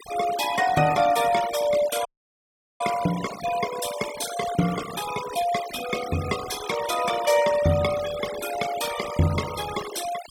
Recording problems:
denoising artefacts; signal-to-artefact ratio 10 dB
dropout; at 2 s for 1 s

